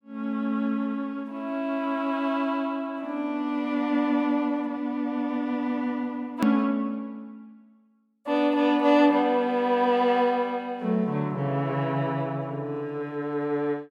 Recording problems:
click at an edit; at 6.5 s

